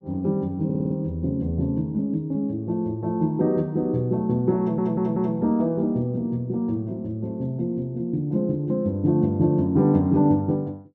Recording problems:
stutter; at 0.5 s and at 4.5 s

